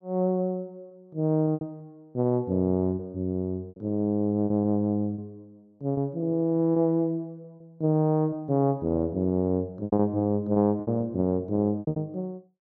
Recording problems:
packet loss; 8% of the sound replaced, filled with repeated pitch periods

